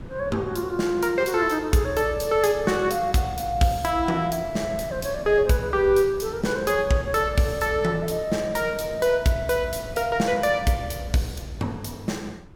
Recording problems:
wind on the microphone; below 300 Hz, SNR 17 dB

